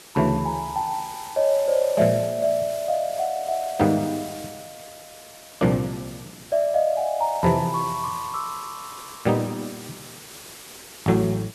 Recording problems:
hiss; SNR 16 dB

